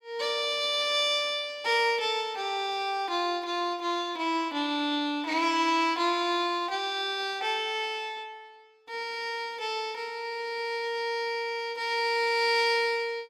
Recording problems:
none

